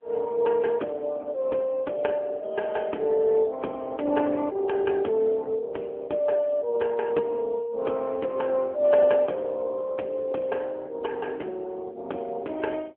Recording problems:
phone line; 260 Hz to 3.2 kHz, AMR-NB

